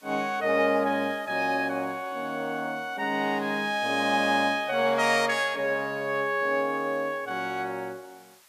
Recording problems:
hiss; SNR 28 dB

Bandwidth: 14.5 kHz